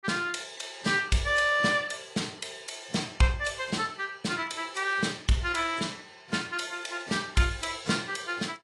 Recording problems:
lossy codec; AAC, log-spectral distance 6 dB, nothing above 10.4 kHz

